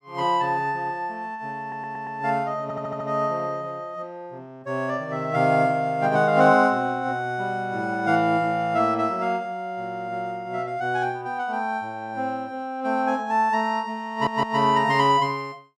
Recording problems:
stutter; at 1.5 s, at 2.5 s and at 14 s

